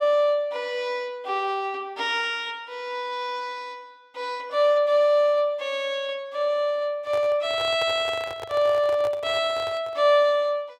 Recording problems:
microphone handling noise; from 7 to 10 s; peak -8 dB vs average level

